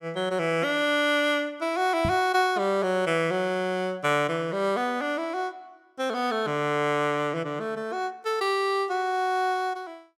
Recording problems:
knock on the microphone; at 2 s; peak 0 dB vs average level

